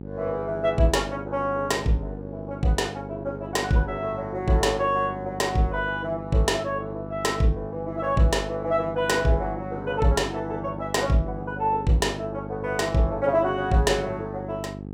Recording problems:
hum; 50 Hz, harmonics up to 850 Hz, SNR 11 dB

